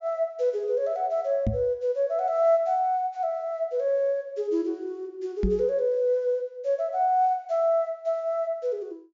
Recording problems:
treble missing; nothing above 7.3 kHz
microphone thump; at 1.5 s and at 5.5 s; peak +3 dB vs average level

